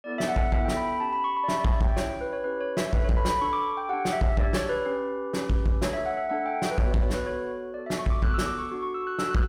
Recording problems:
distorted audio; soft clipping, signal-to-distortion ratio 11 dB

